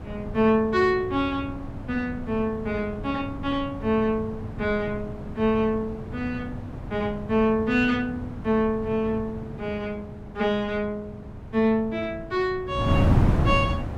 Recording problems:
wind noise; below 250 Hz, SNR 6 dB

